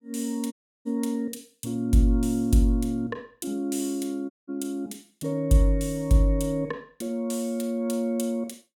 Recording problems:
audio cutting out; at 0.5 s and at 4.5 s

